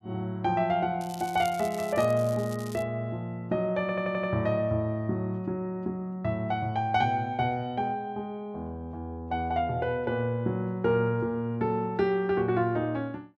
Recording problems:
crackling; from 1 to 3 s; loose cable, SNR 17 dB
stutter; at 4 s

